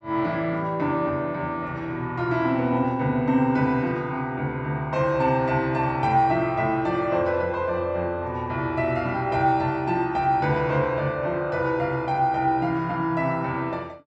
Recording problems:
none

